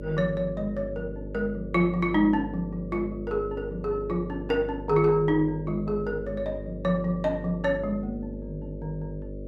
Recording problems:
hum; 50 Hz, harmonics up to 600 Hz, SNR 10 dB

